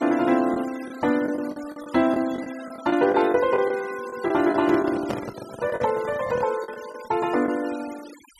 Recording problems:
denoising artefacts; signal-to-artefact ratio 19 dB
lost packets; 8% of the sound replaced, filled with the last packet
microphone handling noise; from 4.5 to 6.5 s; peak -2 dB vs average level

